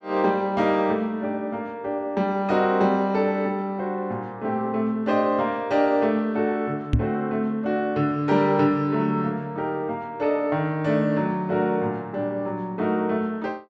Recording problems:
microphone bump; at 7 s; peak +7 dB vs average level

